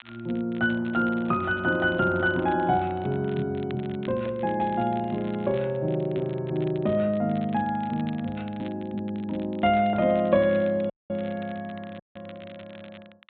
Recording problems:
treble cut off; nothing above 4 kHz
crackle; vinyl, SNR 24 dB
audio cutting out; at 11 s and at 12 s

